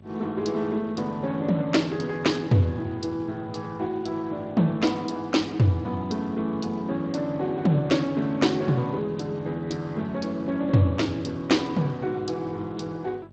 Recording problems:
lossy compression; Speex, then MP2, log-spectral distance 3 dB, nothing above 7.3 kHz
hum; 50 Hz, harmonics up to 650 Hz, SNR 23 dB

